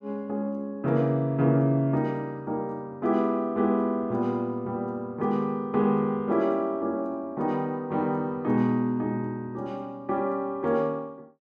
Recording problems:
none

